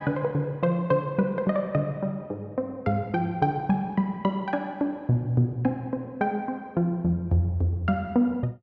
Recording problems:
none

